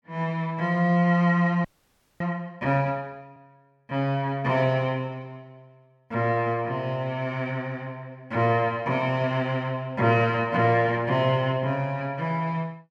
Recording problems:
audio freezing; at 1.5 s for 0.5 s

